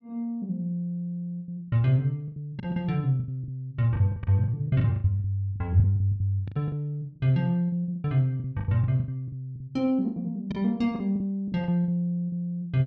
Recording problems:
packet loss; 15% of the sound replaced, filled with the last packet

